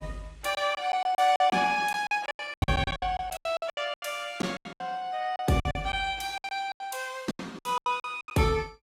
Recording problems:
lossy codec; Opus, log-spectral distance 3 dB, nothing above 16 kHz
packet loss; 19% of the sound replaced, filled with silence

